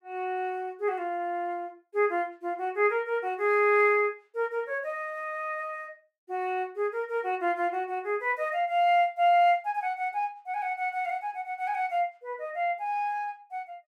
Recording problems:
none

